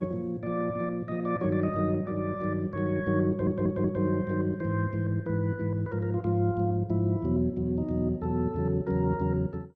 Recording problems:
codec artefacts; Opus, then MP2, log-spectral distance 2 dB, nothing above 13.1 kHz
audio stuttering; at 3.5 s

